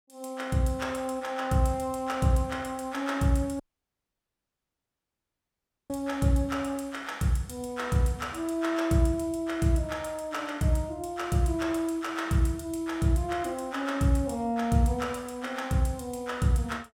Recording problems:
dropout; at 3.5 s for 2.5 s

